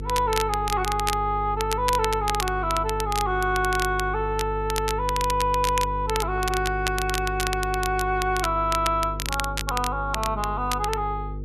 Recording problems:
hum; 50 Hz, harmonics up to 500 Hz, SNR 8 dB
crackling; vinyl, SNR 8 dB

